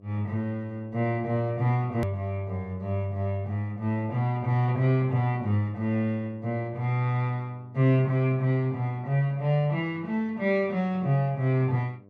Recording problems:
hum; 50 Hz, harmonics up to 1.2 kHz, SNR 28 dB
edit click; at 2 s

